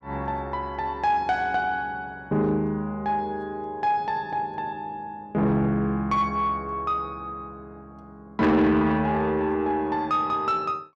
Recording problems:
distorted audio; soft clipping, signal-to-distortion ratio 11 dB

